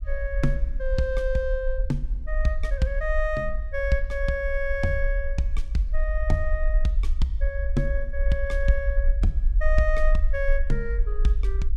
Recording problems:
rumble; below 48 Hz, SNR -1 dB

